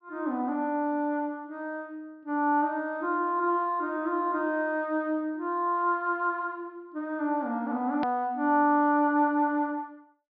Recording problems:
treble missing; nothing above 5.5 kHz
edit click; at 8 s

